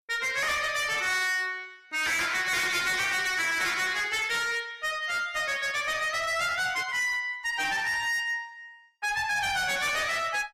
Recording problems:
lossy codec; AAC, log-spectral distance 3 dB, nothing above 15.1 kHz
distorted audio; hard clipping, signal-to-distortion ratio 8 dB

